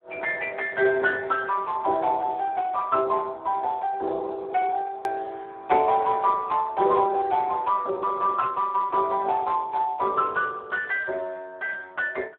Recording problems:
telephone audio; 320 Hz to 3.6 kHz, Speex
click at an edit; at 5 s

